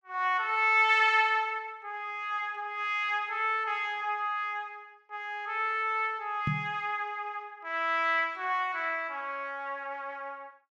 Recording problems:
knock on the microphone; at 6.5 s; peak +1 dB vs average level

